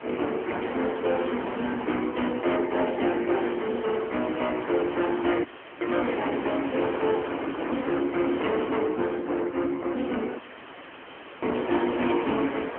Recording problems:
phone line; 220 Hz to 3.3 kHz, AMR-NB
distortion; soft clipping, signal-to-distortion ratio 9 dB
wind on the microphone; below 1.6 kHz, SNR 10 dB
audio cutting out; at 5.5 s and at 10 s for 1 s

